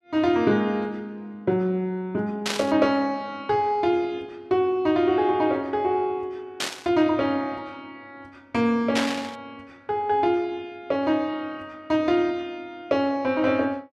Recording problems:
burst of static; at 2.5 s, at 6.5 s and at 9 s; peak +2 dB vs average level

